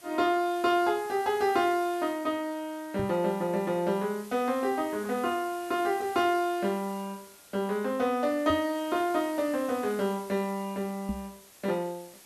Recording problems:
hiss; slope -1 dB per octave, SNR 20 dB
microphone bump; at 3 s, at 8.5 s and at 11 s; peak -2 dB vs average level

